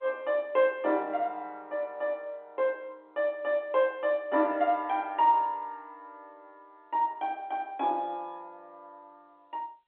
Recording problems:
telephone audio; 240 Hz to 3.6 kHz, G.711

